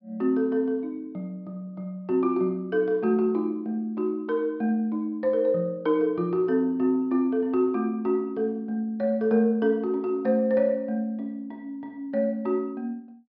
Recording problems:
treble missing; nothing above 5.5 kHz

